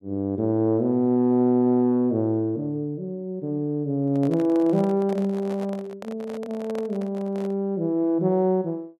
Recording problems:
handling noise; from 4 to 7.5 s; peak -10 dB vs average level

